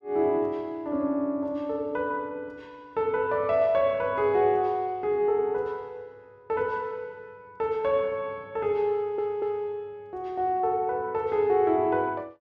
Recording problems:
stutter; at 9 s

